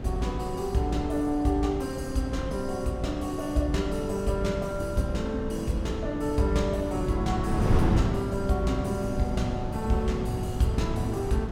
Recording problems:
wind noise; below 230 Hz, SNR 5 dB

